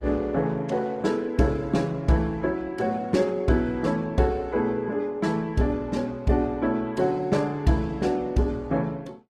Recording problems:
codec artefacts; Opus, log-spectral distance 2 dB, nothing above 15.5 kHz

